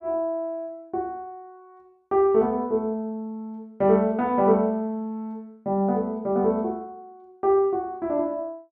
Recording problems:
none

